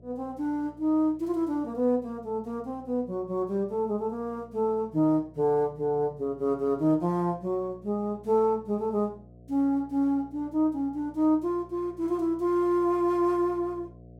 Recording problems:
electrical hum; 60 Hz, harmonics up to 720 Hz, SNR 24 dB

